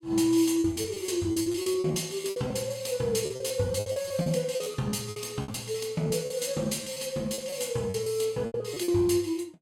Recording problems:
lost packets; 15% of the sound replaced, filled with repeated pitch periods

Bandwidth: 17 kHz